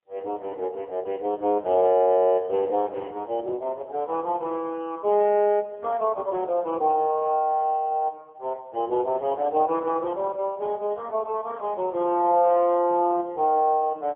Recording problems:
telephone audio; 280 Hz to 3.6 kHz, AMR-NB, then MP3

